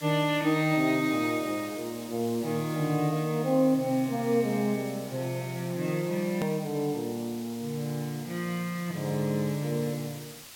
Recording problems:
background hiss; slope +1 dB per octave, SNR 16 dB
hard cut with a click; at 6.5 s

